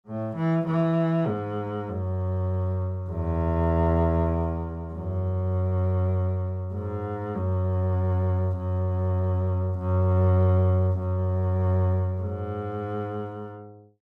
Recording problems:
none

